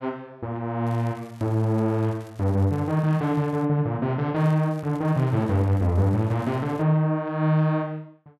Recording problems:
crackle; from 1 to 3.5 s and from 4.5 to 7 s; loose cable, SNR 29 dB

